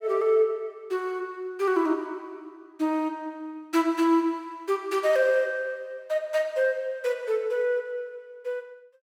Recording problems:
none

